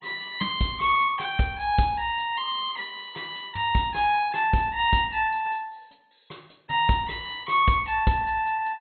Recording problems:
lossy codec; MP2, log-spectral distance 4 dB, nothing above 3.8 kHz

